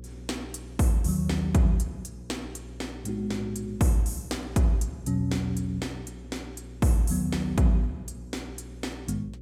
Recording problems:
electrical hum; 60 Hz, harmonics up to 540 Hz, SNR 16 dB

